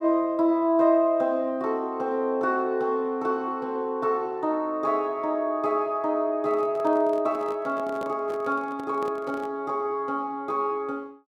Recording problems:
handling noise; from 6.5 to 9.5 s; peak -7 dB vs average level

